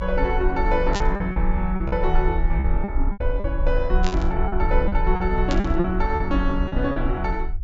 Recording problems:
low-pass filter; nothing above 8 kHz
rumble; below 52 Hz, strongest tone 26 Hz, SNR 1 dB
lost packets; 10% of the sound replaced, filled with repeated pitch periods
static burst; at 1 s, at 4 s and at 5.5 s; peak 0 dB vs average level

